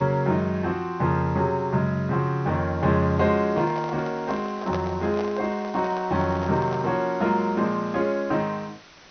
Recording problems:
treble cut off; nothing above 6.2 kHz
hiss; slope -2 dB per octave, SNR 23 dB
handling noise; from 3.5 to 7 s; peak -4 dB vs average level

